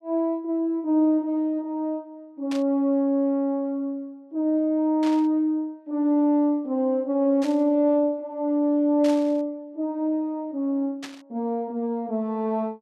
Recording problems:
burst of static; 5 times, first at 2.5 s; peak -9 dB vs average level

